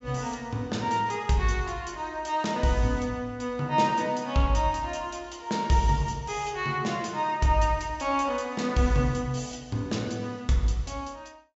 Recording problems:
treble cut off; nothing above 7.6 kHz

